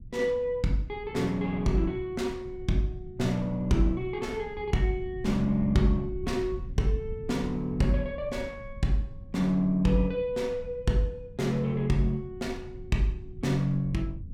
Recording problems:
rumble; below 110 Hz, SNR 14 dB

